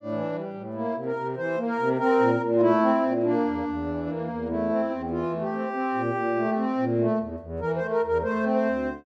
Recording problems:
none

